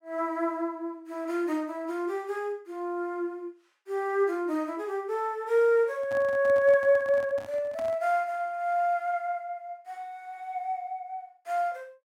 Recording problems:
microphone handling noise; from 6 to 8 s; peak -10 dB vs average level

